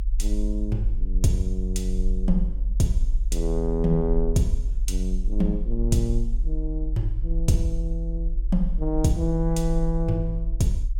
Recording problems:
low-frequency rumble; below 44 Hz, strongest tone 26 Hz, SNR 1 dB

